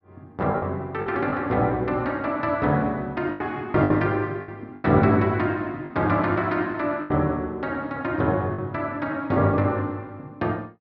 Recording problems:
packet loss; 7% of the sound replaced, filled with the last packet

